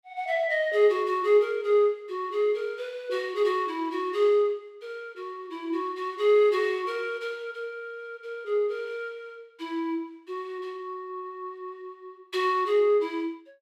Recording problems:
none

